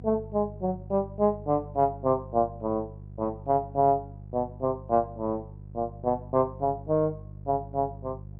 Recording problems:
electrical hum; 50 Hz, harmonics up to 400 Hz, SNR 15 dB

